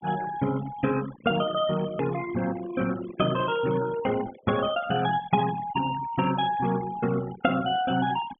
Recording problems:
low-pass filter; nothing above 3.4 kHz
denoising artefacts; signal-to-artefact ratio 14 dB
hard cut with a click; at 2 s

